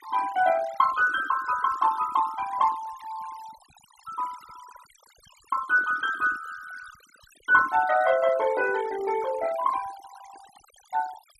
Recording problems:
denoising artefacts; signal-to-artefact ratio 17 dB

